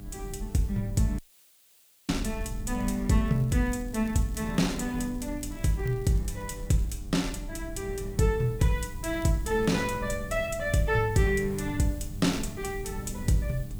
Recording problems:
electrical hum; 50 Hz, harmonics up to 1.2 kHz, SNR 20 dB
background hiss; slope +1 dB per octave, SNR 24 dB
rumble; below 92 Hz, SNR 12 dB
audio cutting out; at 1 s for 1 s
crackling; from 2.5 to 7 s and at 9 s; loose cable, SNR 27 dB

